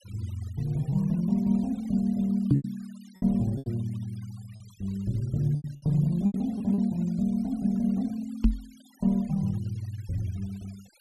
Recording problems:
denoising artefacts; signal-to-artefact ratio 27 dB
lost packets; 5% of the sound replaced, filled with repeated pitch periods
microphone thump; at 2.5 s and at 8.5 s; peak +10 dB vs average level

